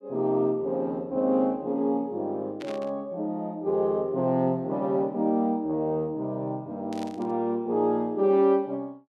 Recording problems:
static burst; at 2.5 s and at 7 s; peak -12 dB vs average level

